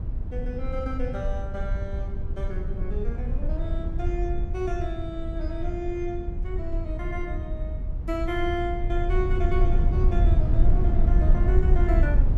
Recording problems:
rumble; below 68 Hz, SNR -6 dB

